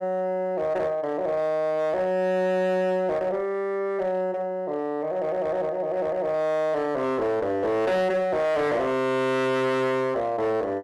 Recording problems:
distortion; hard clipping, uneven, signal-to-distortion ratio 11 dB

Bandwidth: 12.5 kHz